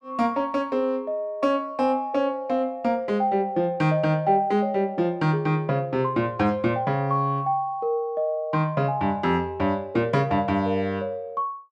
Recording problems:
none

